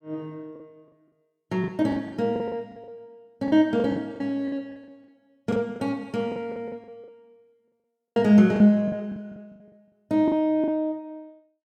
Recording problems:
lost packets; 15% of the sound replaced, filled with the last packet

